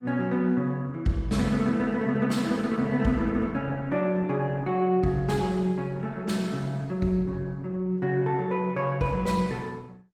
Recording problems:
lossy compression; Opus, log-spectral distance 2 dB, nothing above 19 kHz

